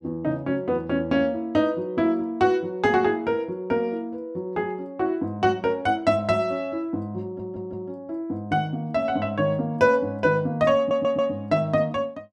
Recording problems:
audio stuttering; at 7 s and at 11 s

